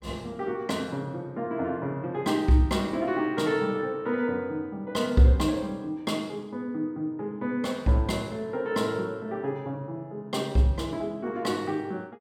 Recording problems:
none

